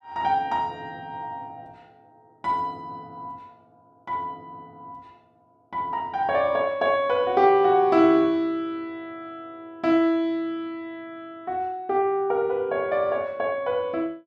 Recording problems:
none

